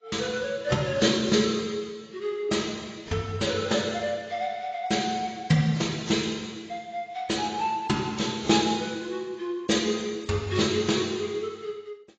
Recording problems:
codec artefacts; AAC, log-spectral distance 4 dB, nothing above 7.3 kHz

